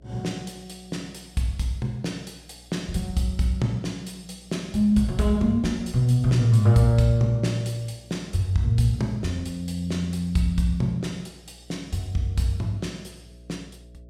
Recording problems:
hum; 60 Hz, harmonics up to 660 Hz, SNR 28 dB

